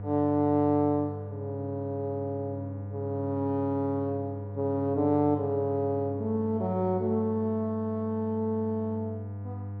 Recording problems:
hum; 50 Hz, harmonics up to 700 Hz, SNR 9 dB

